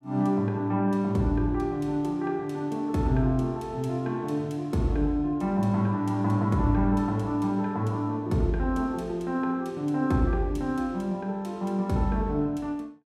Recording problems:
none

